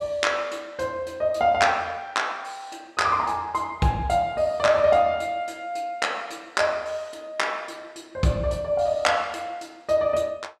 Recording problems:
none

